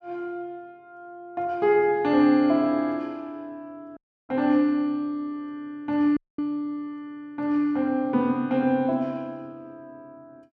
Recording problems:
audio cutting out; at 4 s and at 6 s

